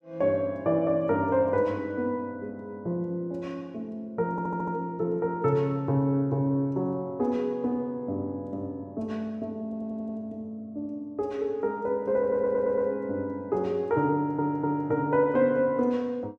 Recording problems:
stutter; 4 times, first at 4.5 s

